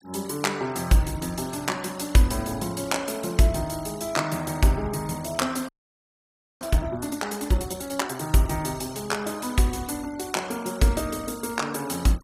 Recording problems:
denoising artefacts; signal-to-artefact ratio 21 dB
frozen audio; at 5.5 s for 1 s

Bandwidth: 15.5 kHz